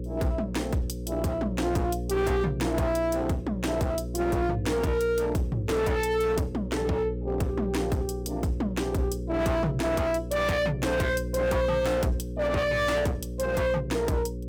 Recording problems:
distortion; hard clipping, signal-to-distortion ratio 7 dB
hum; 60 Hz, harmonics up to 540 Hz, SNR 7 dB

